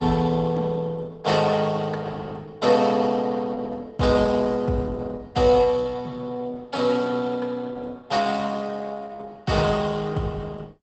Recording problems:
codec artefacts; Opus, log-spectral distance 3 dB, nothing above 8 kHz

